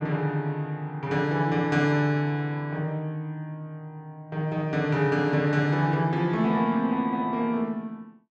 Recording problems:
none

